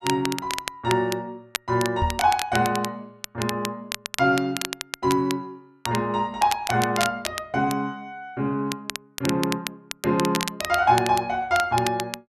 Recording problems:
crackling; vinyl, SNR 8 dB
microphone thump; at 2 s; peak +1 dB vs average level

